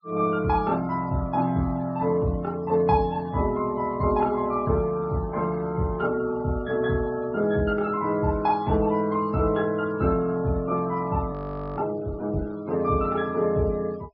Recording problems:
treble cut off; nothing above 5.5 kHz
denoising artefacts; signal-to-artefact ratio 24 dB
frozen audio; at 11 s

